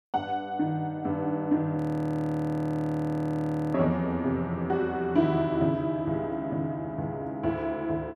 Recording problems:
audio freezing; at 2 s for 2 s

